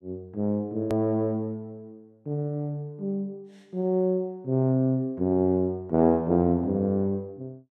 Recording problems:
edit click; at 1 s

